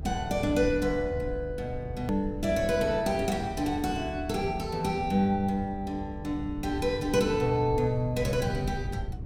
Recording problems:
electrical hum; 50 Hz, harmonics up to 450 Hz, SNR 19 dB
low-frequency rumble; below 110 Hz, SNR 11 dB
hard cut with a click; at 2 s

